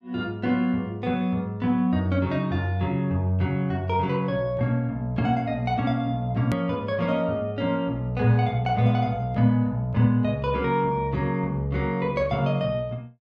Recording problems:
edit click; at 6.5 s

